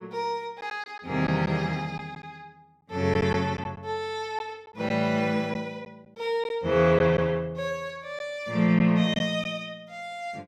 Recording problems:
packet loss; 3% of the sound replaced, filled with silence

